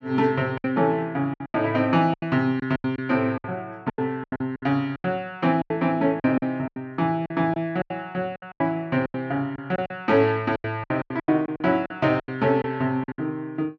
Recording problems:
lost packets; 15% of the sound replaced, filled with silence

